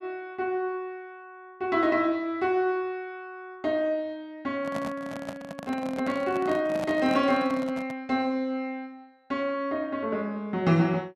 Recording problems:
microphone handling noise; from 4.5 to 8 s; peak -3 dB vs average level

